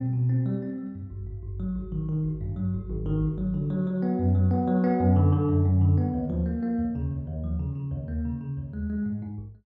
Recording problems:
none

